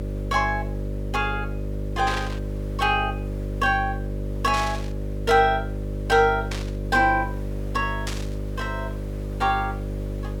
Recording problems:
hum; 50 Hz, harmonics up to 600 Hz, SNR 6 dB
background hiss; SNR 26 dB
burst of static; 4 times, first at 2 s; peak -3 dB vs average level

